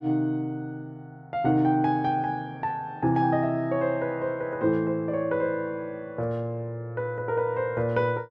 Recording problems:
none

